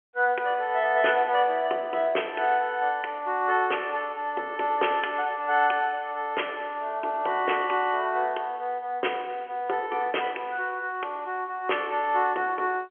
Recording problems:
telephone audio; 320 Hz to 3.3 kHz, G.711

